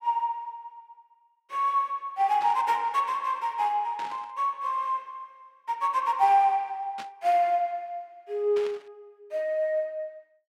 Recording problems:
burst of static; 4 times, first at 2.5 s; peak -10 dB vs average level

